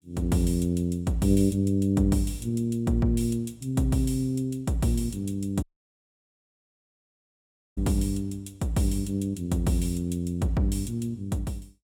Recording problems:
dropout; at 5.5 s for 2 s

